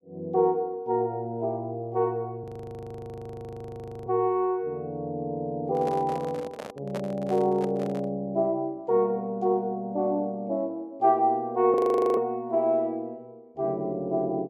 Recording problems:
frozen audio; at 2.5 s for 1.5 s and at 12 s
microphone handling noise; from 5.5 to 8 s; peak -4 dB vs average level

